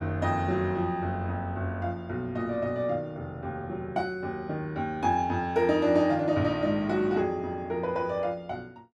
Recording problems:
none

